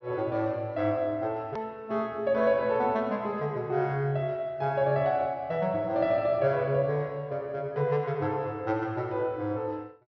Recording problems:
treble cut off; nothing above 6.1 kHz
click at an edit; at 1.5 s

